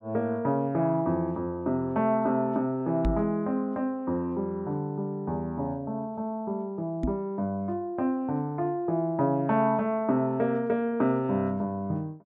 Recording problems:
microphone thump; at 3 s and at 7 s; peak +3 dB vs average level

